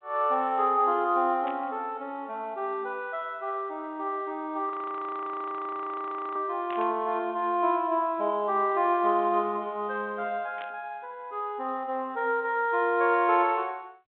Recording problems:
phone line; 220 Hz to 3.5 kHz, G.726
static burst; at 1.5 s, at 6.5 s and at 11 s; peak -13 dB vs average level
frozen audio; at 4.5 s for 1.5 s

